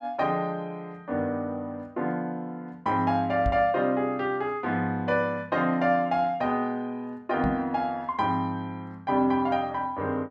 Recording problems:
microphone bump; at 3.5 s and at 7.5 s; peak +1 dB vs average level

